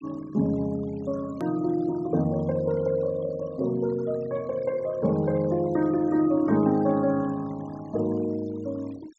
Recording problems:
low-pass filter; nothing above 8 kHz
noise reduction artefacts; signal-to-artefact ratio 23 dB
click at an edit; at 1.5 s

